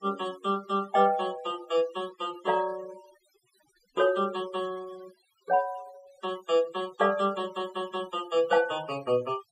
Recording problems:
denoising artefacts; signal-to-artefact ratio 18 dB

